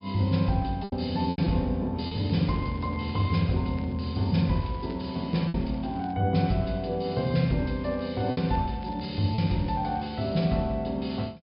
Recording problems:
treble missing; nothing above 5.5 kHz
lost packets; 3% of the sound replaced, filled with repeated pitch periods
crackling; from 2 to 3.5 s, from 3.5 to 6 s and from 8 to 10 s; loose cable, SNR 27 dB

